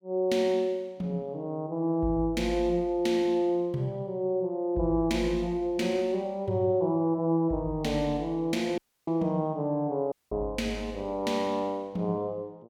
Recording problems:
audio cutting out; at 9 s and at 10 s

